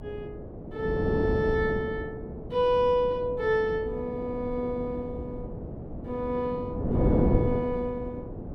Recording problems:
hum; 60 Hz, harmonics up to 720 Hz, SNR 22 dB
wind on the microphone; below 360 Hz, SNR 4 dB

